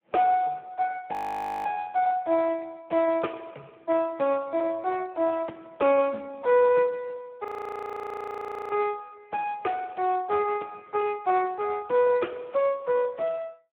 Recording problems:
phone line; 280 Hz to 3 kHz, Speex
audio freezing; at 1 s for 0.5 s and at 7.5 s for 1.5 s

